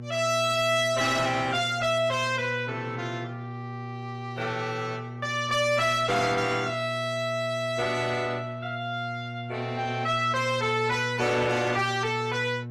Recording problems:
codec artefacts; AAC, log-spectral distance 2 dB, nothing above 14.7 kHz
distorted audio; soft clipping, signal-to-distortion ratio 10 dB
electrical hum; 60 Hz, harmonics up to 600 Hz, SNR 11 dB

